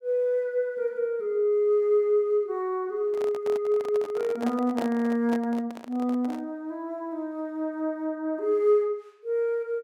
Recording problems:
microphone handling noise; from 3 to 6.5 s; peak -4 dB vs average level

